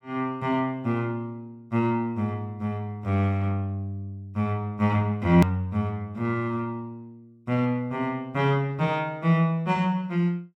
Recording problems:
edit click; at 5.5 s

